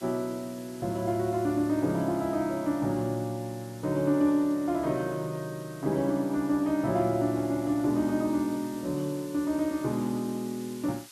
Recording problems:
background hiss; slope +3 dB per octave, SNR 21 dB

